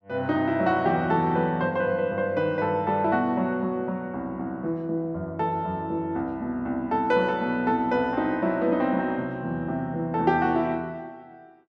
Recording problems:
none

